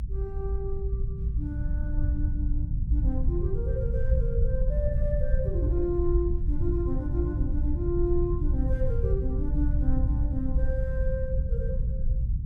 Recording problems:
low-frequency rumble; below 76 Hz, SNR -5 dB

